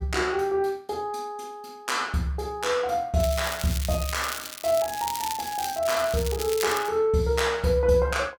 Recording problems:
crackle; from 3 to 7 s; loose cable, SNR 9 dB

